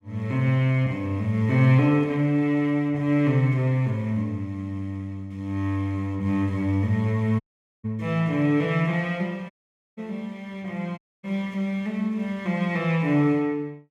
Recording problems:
dropout; at 7.5 s, at 9.5 s and at 11 s

